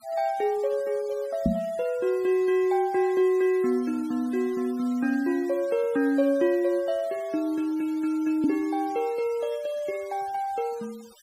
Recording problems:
denoising artefacts; signal-to-artefact ratio 23 dB
knock on the microphone; at 1.5 s and at 8.5 s; peak +5 dB vs average level

